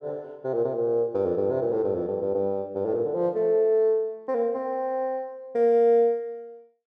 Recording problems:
none

